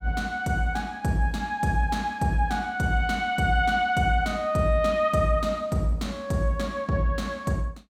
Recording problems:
none

